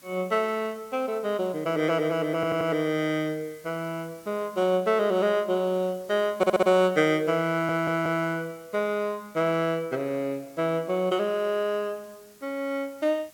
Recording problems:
background hiss; SNR 26 dB
stutter; at 2.5 s, at 6.5 s and at 7.5 s

